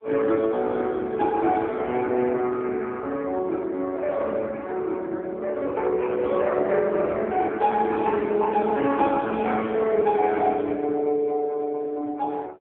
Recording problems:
telephone audio; 240 Hz to 2.2 kHz, AMR-NB

